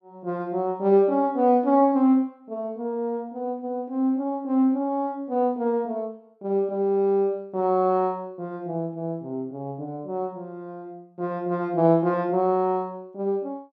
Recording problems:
none

